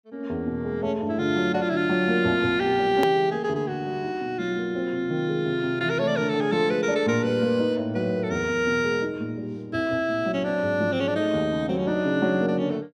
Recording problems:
edit click; at 3 s

